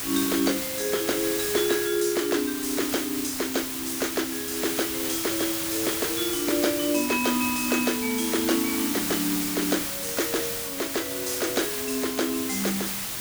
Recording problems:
background hiss; slope 0 dB per octave, SNR 1 dB

